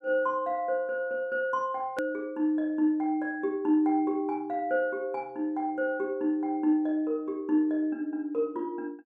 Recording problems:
click at an edit; at 2 s

